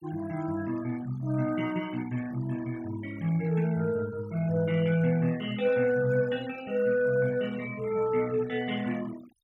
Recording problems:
noise reduction artefacts; signal-to-artefact ratio 19 dB

